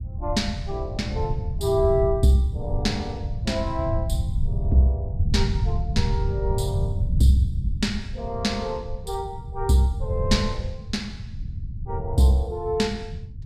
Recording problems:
rumble; below 110 Hz, SNR 4 dB

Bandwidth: 14.5 kHz